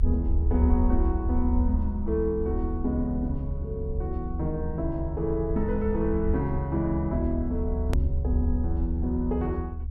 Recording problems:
low-frequency rumble; below 72 Hz, SNR 0 dB
hard cut with a click; at 8 s

